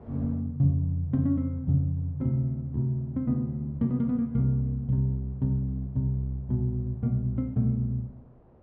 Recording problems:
wind noise; below 510 Hz, SNR 28 dB

